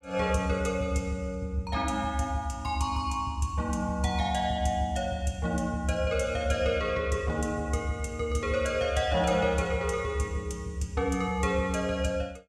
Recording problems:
none

